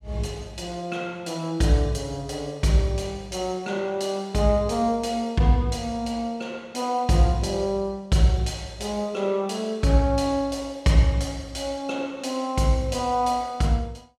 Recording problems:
none

